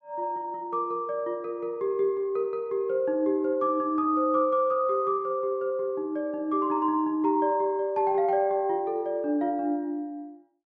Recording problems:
none

